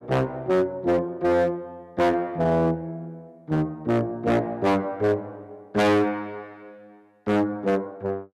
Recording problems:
distorted audio; hard clipping, signal-to-distortion ratio 6 dB

